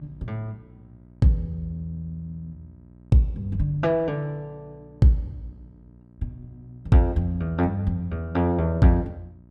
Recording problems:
hum; 60 Hz, harmonics up to 660 Hz, SNR 26 dB

